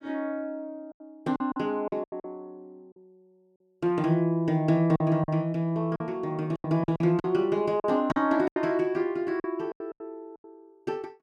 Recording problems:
packet loss; 11% of the sound replaced, filled with silence

